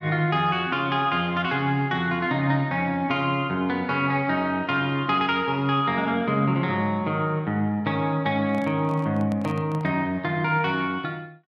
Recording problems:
microphone handling noise; from 8.5 to 10 s; peak -7 dB vs average level

